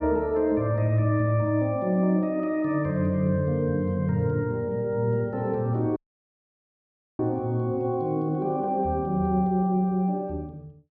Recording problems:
dropout; at 6 s for 1 s

